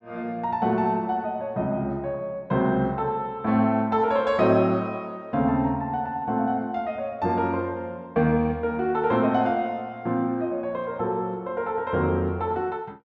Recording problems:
none

